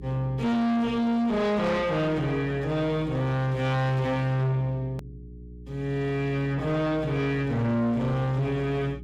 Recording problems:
distortion; soft clipping, signal-to-distortion ratio 6 dB
electrical hum; 60 Hz, harmonics up to 420 Hz, SNR 17 dB
hard cut with a click; at 5 s

